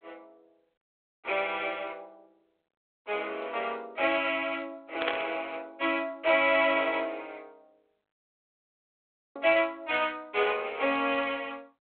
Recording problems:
phone line; 340 Hz to 3.5 kHz, G.726
static burst; at 5 s; peak +4 dB vs average level
audio cutting out; at 8.5 s for 1 s

